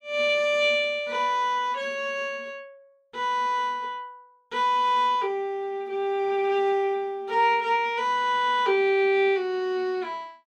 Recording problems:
none

